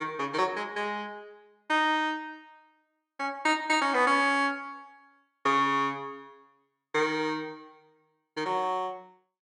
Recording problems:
none

